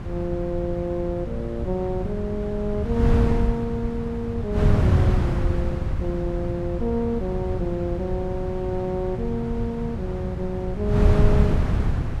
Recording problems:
wind on the microphone; below 150 Hz, SNR -2 dB

